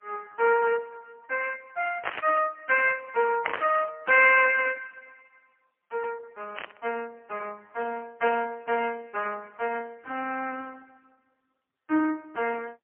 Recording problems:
telephone audio; 260 Hz to 2.8 kHz, AMR-NB, then MP3
static burst; at 2 s, at 3.5 s and at 6.5 s; peak +2 dB vs average level

